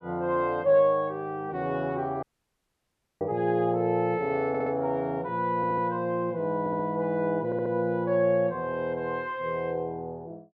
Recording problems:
audio cutting out; at 2 s for 1 s
audio stuttering; 4 times, first at 4.5 s

